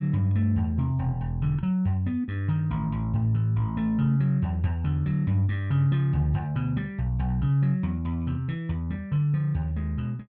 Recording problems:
none

